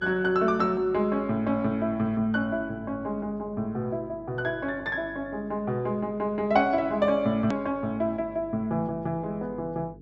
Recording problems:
treble cut off; nothing above 8 kHz
hum; 50 Hz, harmonics up to 450 Hz, SNR 22 dB
click at an edit; at 7.5 s

